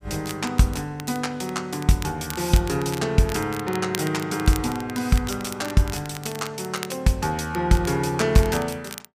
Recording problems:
crackling; vinyl, SNR 15 dB

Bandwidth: 15 kHz